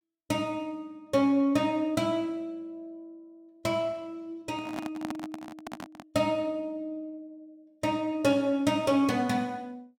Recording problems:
handling noise; from 4.5 to 6 s; peak -3 dB vs average level

